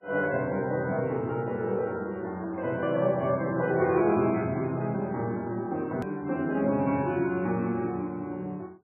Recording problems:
codec artefacts; MP3, log-spectral distance 2 dB, nothing above 2.4 kHz
hard cut with a click; at 6 s

